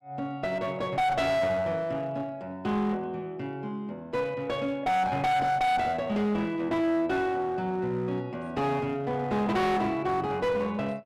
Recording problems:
distorted audio; hard clipping, uneven, signal-to-distortion ratio 7 dB

